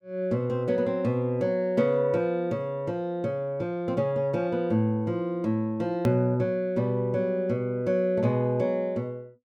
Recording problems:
hard cut with a click; at 6 s

